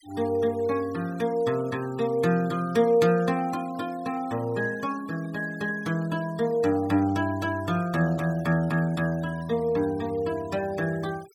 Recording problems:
denoising artefacts; signal-to-artefact ratio 22 dB

